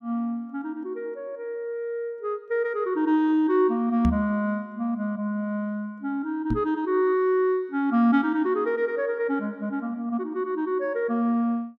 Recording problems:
microphone thump; at 4 s and at 6.5 s; peak +4 dB vs average level

